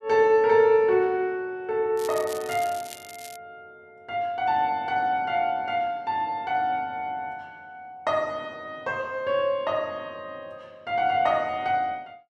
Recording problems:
crackling; from 2 to 3.5 s; loose cable, SNR 16 dB

